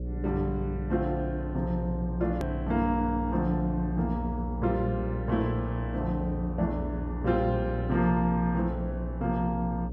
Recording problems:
hum; 60 Hz, harmonics up to 540 Hz, SNR 5 dB
edit click; at 2.5 s

